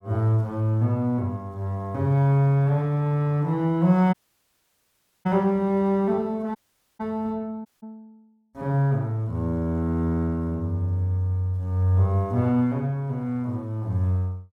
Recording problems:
audio cutting out; at 4 s for 1 s, at 6.5 s and at 7.5 s

